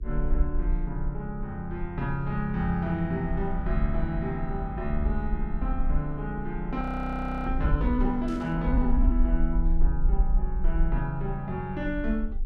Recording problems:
hum; 60 Hz, harmonics up to 420 Hz, SNR 24 dB
rumble; below 48 Hz, SNR 1 dB
frozen audio; at 7 s for 0.5 s
burst of static; at 8.5 s; peak -15 dB vs average level

